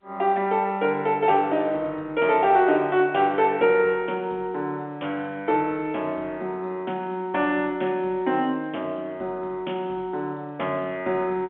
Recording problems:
phone line; 220 Hz to 3.5 kHz, G.711

